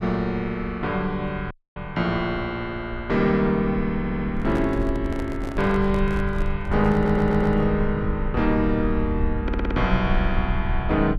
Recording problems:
rumble; below 70 Hz, SNR 7 dB
audio cutting out; at 1.5 s
stutter; at 4 s, at 7 s and at 9.5 s
microphone handling noise; from 4.5 to 7.5 s; peak -7 dB vs average level

